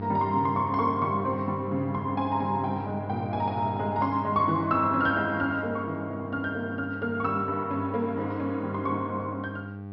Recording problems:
low-pass filter; nothing above 5.6 kHz
hum; 50 Hz, harmonics up to 1.2 kHz, SNR 9 dB

